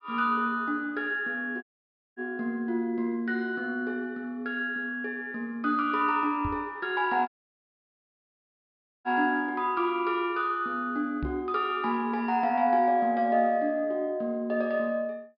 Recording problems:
low-pass filter; nothing above 5.5 kHz
audio cutting out; at 1.5 s for 0.5 s and at 7.5 s for 2 s
microphone bump; at 6.5 s and at 11 s; peak -3 dB vs average level

